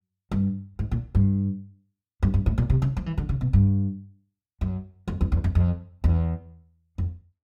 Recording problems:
none

